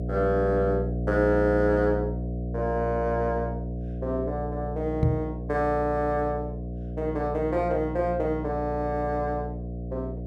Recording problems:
electrical hum; 60 Hz, harmonics up to 720 Hz, SNR 5 dB
microphone bump; at 5 s; peak +6 dB vs average level

